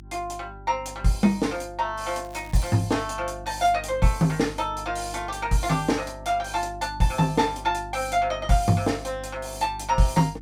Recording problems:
hum; 50 Hz, harmonics up to 350 Hz, SNR 17 dB
crackling; at 2.5 s; loose cable, SNR 23 dB

